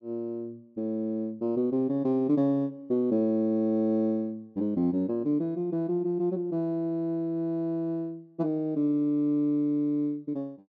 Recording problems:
none

